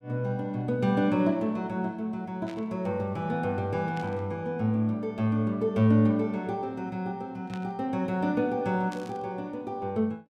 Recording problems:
static burst; 4 times, first at 2.5 s; peak -12 dB vs average level

